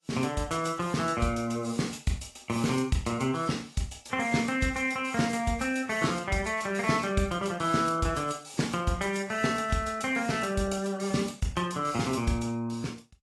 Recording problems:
lossy codec; AAC, log-spectral distance 4 dB, nothing above 11.6 kHz

